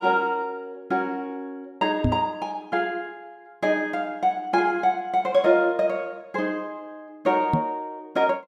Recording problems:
microphone thump; at 2 s and at 7.5 s; peak +5 dB vs average level

